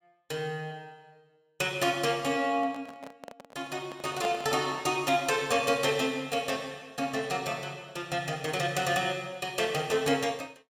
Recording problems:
handling noise; from 2.5 to 5 s; peak -2 dB vs average level

